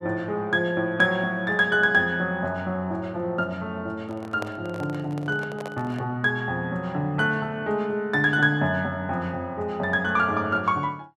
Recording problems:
microphone handling noise; from 4 to 6 s; peak -4 dB vs average level

